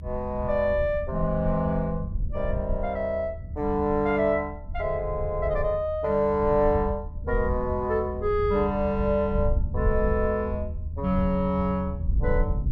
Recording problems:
low-frequency rumble; below 80 Hz, SNR 7 dB

